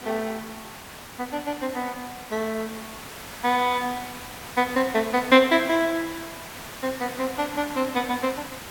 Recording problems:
background hiss; slope -2 dB per octave, SNR 13 dB

